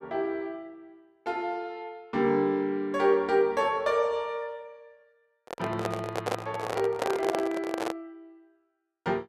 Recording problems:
handling noise; from 5.5 to 8 s; peak +3 dB vs average level

